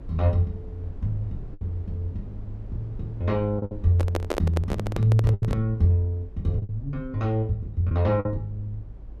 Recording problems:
rumble; below 68 Hz, SNR 16 dB
lost packets; 4% of the sound replaced, filled with the last packet
microphone handling noise; from 4 to 5.5 s; peak +3 dB vs average level

